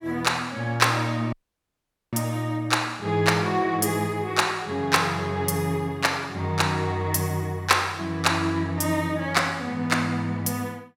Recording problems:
audio cutting out; at 1.5 s for 1 s

